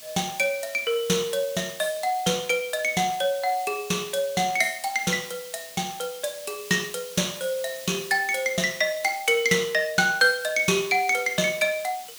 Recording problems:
hiss; slope +2 dB per octave, SNR 16 dB

